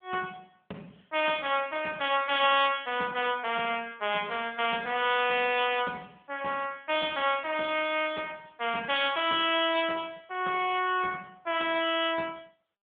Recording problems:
phone line; 280 Hz to 3.4 kHz, AMR-NB

